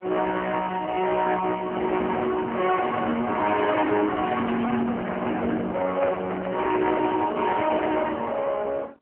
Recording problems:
phone line; 280 Hz to 2.2 kHz, AMR-NB
distorted audio; hard clipping, signal-to-distortion ratio 8 dB
handling noise; from 6 to 8 s; peak -3 dB vs average level

